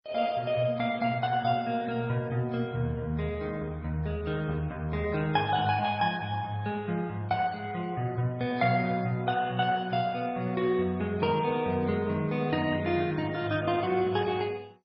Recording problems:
lossy codec; MP3, then MP2, log-spectral distance 3 dB, nothing above 5.2 kHz

